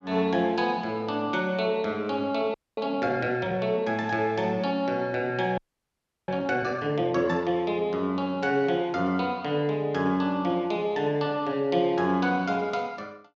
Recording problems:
frozen audio; at 2.5 s and at 5.5 s for 0.5 s

